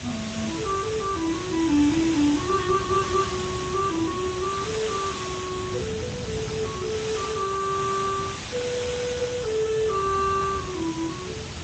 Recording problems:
lossy codec; Speex, log-spectral distance 10 dB, nothing above 7.3 kHz
background hiss; slope -1 dB per octave, SNR 8 dB
wind noise; below 250 Hz, SNR 11 dB

